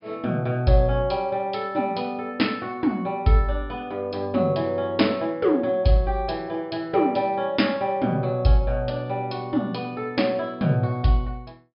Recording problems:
treble cut off; nothing above 5.5 kHz

